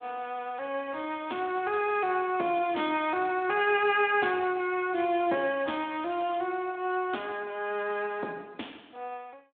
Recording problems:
telephone audio; 260 Hz to 3.6 kHz, Speex

